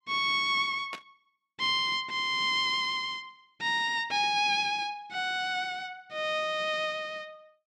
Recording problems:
static burst; at 1 s; peak -7 dB vs average level

